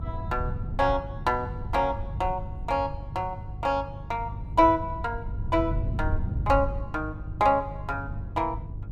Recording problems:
mains hum; 50 Hz, harmonics up to 500 Hz, SNR 13 dB
wind noise; below 110 Hz, SNR 7 dB

